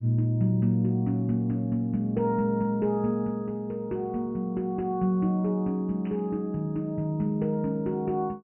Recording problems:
low-pass filter; nothing above 3 kHz
static burst; at 6 s; peak -19 dB vs average level

